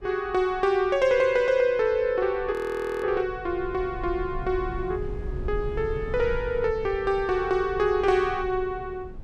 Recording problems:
rumble; below 100 Hz, SNR 14 dB
audio freezing; at 2.5 s for 0.5 s

